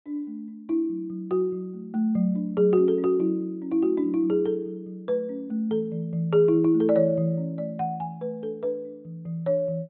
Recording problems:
treble cut off; nothing above 4 kHz

